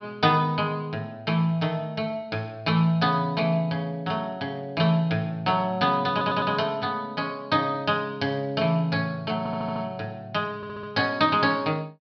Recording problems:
treble missing; nothing above 5.5 kHz
stutter; at 6 s, at 9.5 s and at 11 s

